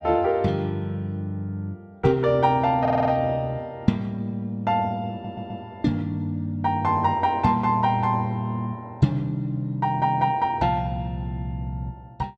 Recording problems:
audio stuttering; at 3 s and at 5 s

